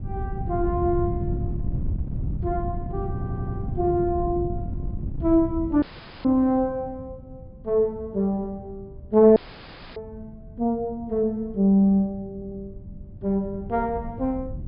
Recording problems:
low-pass filter; nothing above 5 kHz
wind on the microphone; below 150 Hz, SNR 9 dB
audio stuttering; at 3 s and at 12 s
audio cutting out; at 6 s and at 9.5 s for 0.5 s

